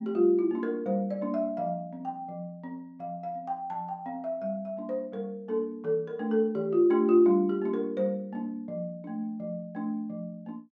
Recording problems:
none

